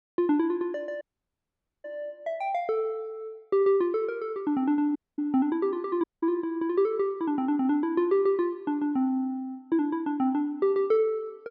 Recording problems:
dropout; at 1 s for 1 s, at 5 s and at 6 s

